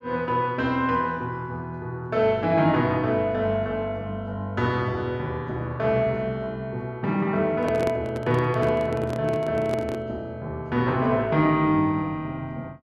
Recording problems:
handling noise; from 7.5 to 10 s; peak -1 dB vs average level

